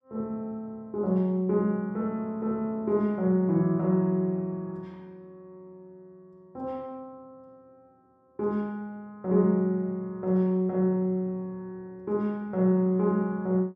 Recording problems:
none

